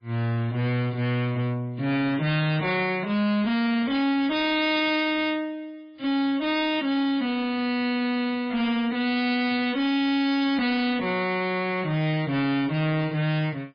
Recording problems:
lossy compression; MP3, log-spectral distance 3 dB, nothing above 5 kHz
distorted audio; hard clipping, signal-to-distortion ratio 8 dB

